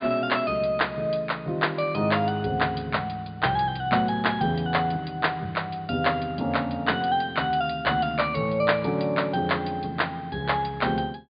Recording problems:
treble missing; nothing above 4.8 kHz

